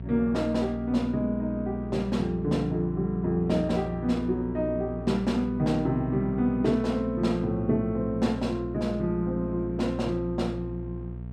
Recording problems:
hum; 60 Hz, harmonics up to 480 Hz, SNR 10 dB

